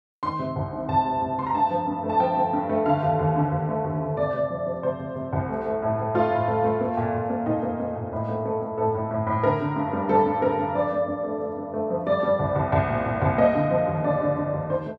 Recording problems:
none

